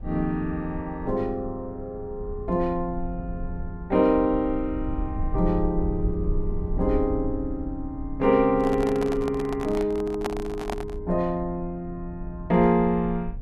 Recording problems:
low-frequency rumble; below 70 Hz, SNR 10 dB
handling noise; from 8.5 to 11 s; peak 0 dB vs average level

